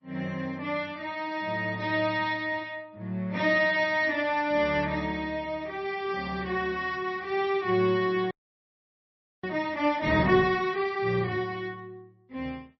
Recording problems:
lossy codec; MP3, log-spectral distance 2 dB, nothing above 5.7 kHz
frozen audio; at 8.5 s for 1 s

